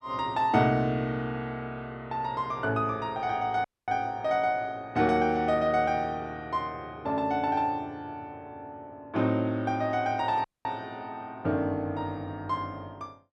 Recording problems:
audio cutting out; at 3.5 s and at 10 s

